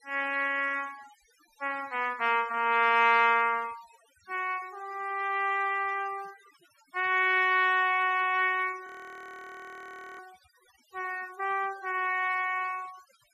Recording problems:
denoising artefacts; signal-to-artefact ratio 24 dB
audio freezing; at 9 s for 1.5 s

